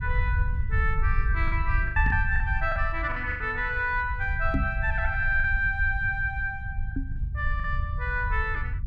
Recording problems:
low-frequency rumble; below 76 Hz, SNR 3 dB
packet loss; 6% of the sound replaced, filled with the last packet
knock on the microphone; at 2 s, at 4.5 s and at 7 s; peak +4 dB vs average level

